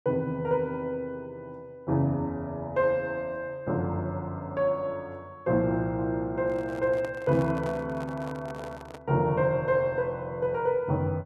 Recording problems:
microphone handling noise; from 6.5 to 9 s; peak -8 dB vs average level

